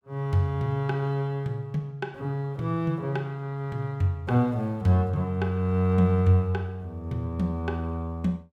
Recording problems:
none

